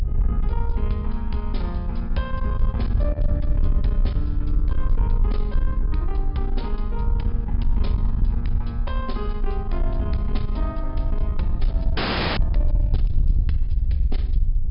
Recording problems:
treble missing; nothing above 5.5 kHz
distorted audio; soft clipping, signal-to-distortion ratio 11 dB
low-frequency rumble; below 52 Hz, strongest tone 26 Hz, SNR -4 dB
wind noise; below 70 Hz, SNR -5 dB
frozen audio; at 12 s

